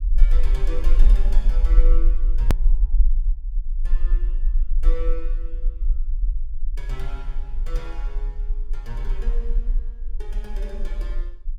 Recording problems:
rumble; below 38 Hz, SNR -15 dB
hard cut with a click; at 2.5 s

